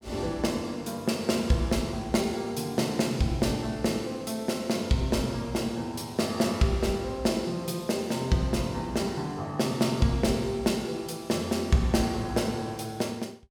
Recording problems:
none

